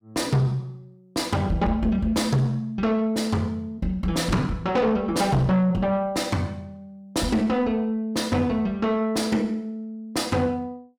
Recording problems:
distortion; soft clipping, signal-to-distortion ratio 11 dB

